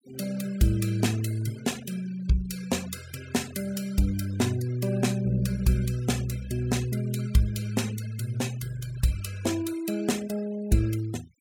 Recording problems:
noise reduction artefacts; signal-to-artefact ratio 18 dB

